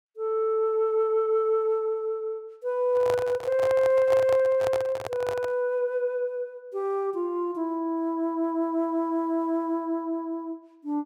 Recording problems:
handling noise; from 3 to 5.5 s; peak -2 dB vs average level

